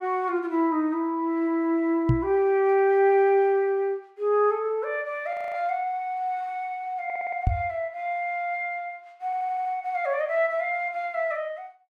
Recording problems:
microphone bump; at 2 s and at 7.5 s; peak +7 dB vs average level
audio freezing; at 5.5 s
stutter; at 7 s and at 9.5 s

